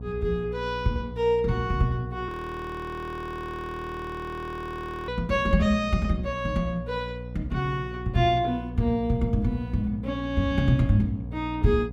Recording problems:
hum; 60 Hz, harmonics up to 720 Hz, SNR 11 dB
audio freezing; at 2.5 s for 3 s

